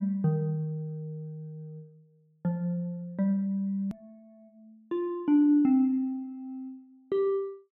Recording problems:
edit click; at 4 s

